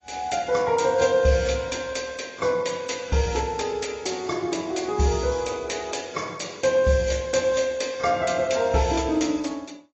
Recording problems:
lossy codec; AAC, log-spectral distance 6 dB, nothing above 7.3 kHz

